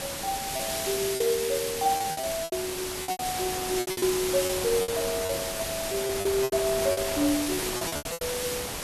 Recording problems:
hiss; SNR 2 dB
wind on the microphone; below 1.5 kHz, SNR 10 dB
packet loss; 14% of the sound replaced, filled with repeated pitch periods

